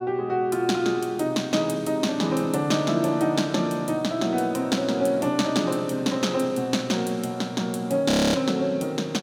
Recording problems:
audio freezing; at 8 s

